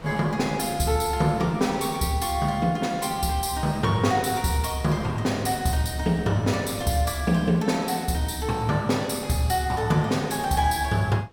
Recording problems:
wind noise; below 610 Hz, SNR 22 dB

